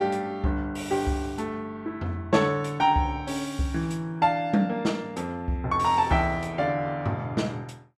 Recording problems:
none

